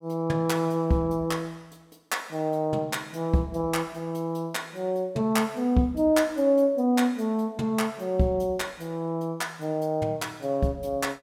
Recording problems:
none

